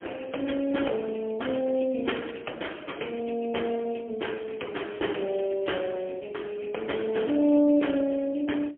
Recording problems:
phone line; 220 Hz to 3.3 kHz, AMR-NB, then MP3
crackling; at 2 s and from 5 to 6 s; loose cable, SNR 24 dB

